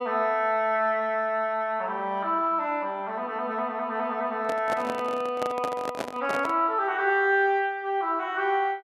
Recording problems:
microphone handling noise; from 4.5 to 6.5 s; peak 0 dB vs average level

